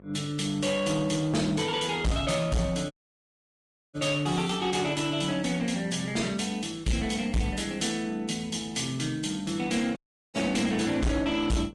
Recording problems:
lossy compression; Vorbis, log-spectral distance 4 dB, nothing above 10.7 kHz
distorted audio; hard clipping, uneven, signal-to-distortion ratio 6 dB
hum; 50 Hz, harmonics up to 1.2 kHz, SNR 24 dB
dropout; at 3 s for 1 s and at 10 s

